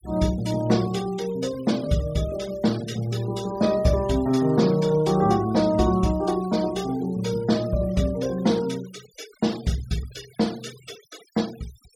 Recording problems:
noise reduction artefacts; signal-to-artefact ratio 19 dB

